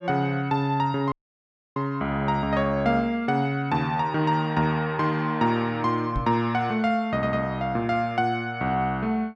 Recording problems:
dropout; at 1 s for 0.5 s
knock on the microphone; at 6 s; peak -1 dB vs average level
audio stuttering; at 7 s

